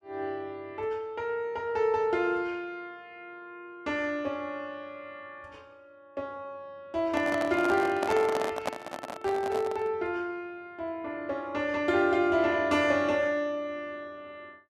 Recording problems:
handling noise; from 7 to 10 s; peak +2 dB vs average level

